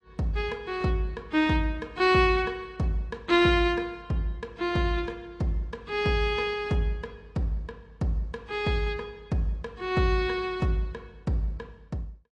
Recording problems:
codec artefacts; AAC, log-spectral distance 2 dB

